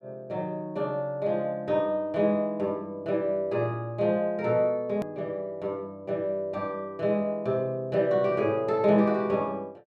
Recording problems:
edit click; at 5 s

